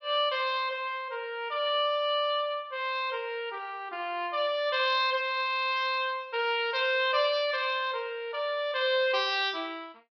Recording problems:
treble missing; nothing above 5.5 kHz

